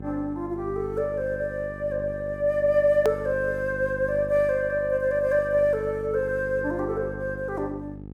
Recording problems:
hum; 50 Hz, harmonics up to 800 Hz, SNR 13 dB
click at an edit; at 3 s

